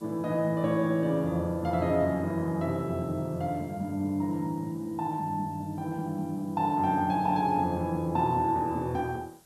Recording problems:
hiss; SNR 29 dB

